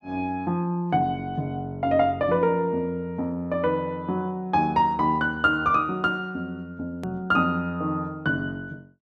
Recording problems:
hard cut with a click; at 7 s

